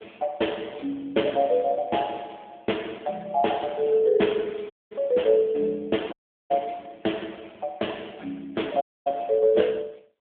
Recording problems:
telephone audio; 220 Hz to 3.5 kHz, AMR-NB
dropout; at 4.5 s, at 6 s and at 9 s

